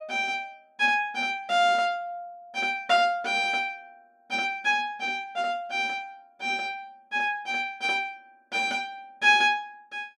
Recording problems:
none

